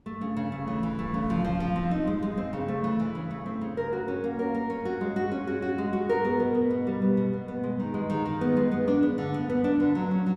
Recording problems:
wind on the microphone; below 210 Hz, SNR 17 dB

